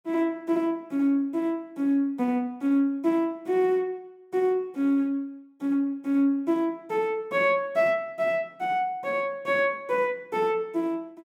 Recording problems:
none

